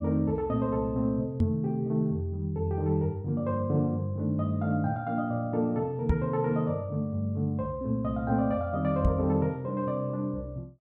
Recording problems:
microphone bump; at 1.5 s, at 6 s and at 9 s; peak +7 dB vs average level

